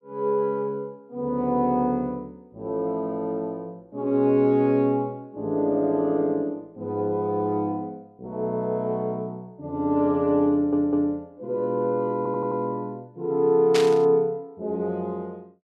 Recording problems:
audio stuttering; at 11 s and at 12 s
burst of static; at 14 s; peak +1 dB vs average level

